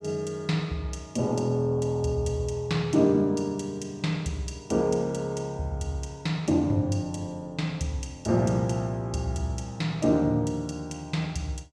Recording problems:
none

